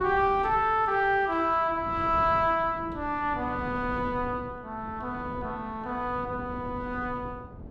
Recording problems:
wind noise; below 290 Hz, SNR 15 dB

